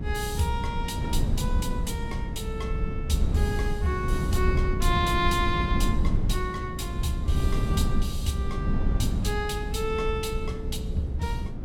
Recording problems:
electrical hum; 60 Hz, harmonics up to 540 Hz, SNR 9 dB
low-frequency rumble; below 130 Hz, SNR -1 dB

